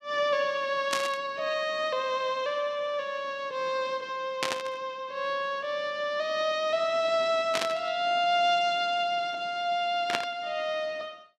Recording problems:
burst of static; 4 times, first at 1 s; peak +4 dB vs average level

